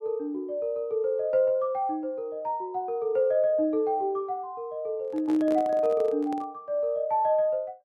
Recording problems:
handling noise; from 5 to 6.5 s; peak -7 dB vs average level

